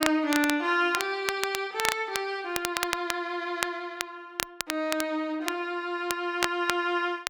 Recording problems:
crackling; vinyl, SNR 5 dB

